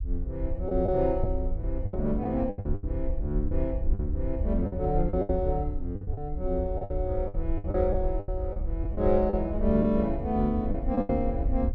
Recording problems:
rumble; below 68 Hz, SNR 4 dB
lost packets; 11% of the sound replaced, filled with the last packet

